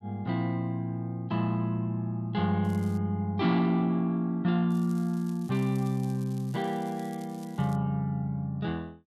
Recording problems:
crackling; at 2.5 s and from 4.5 to 8 s; loose cable, SNR 25 dB

